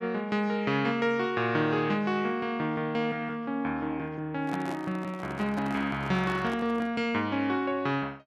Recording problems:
microphone handling noise; from 4.5 to 7 s; peak -5 dB vs average level

